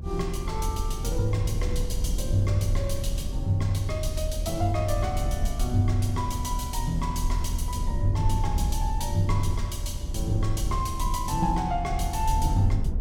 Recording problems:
low-frequency rumble; below 78 Hz, SNR 2 dB

